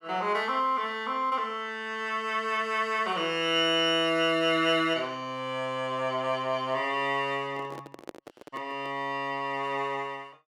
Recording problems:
handling noise; from 7.5 to 9 s; peak -8 dB vs average level

